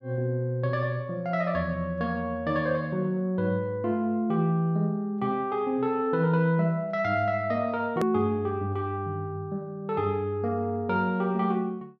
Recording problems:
edit click; at 8 s

